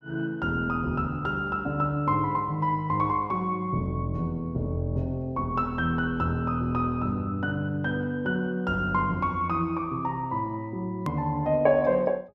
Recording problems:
hard cut with a click; at 11 s

